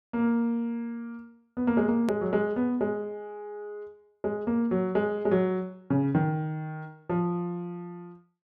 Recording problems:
edit click; at 2 s

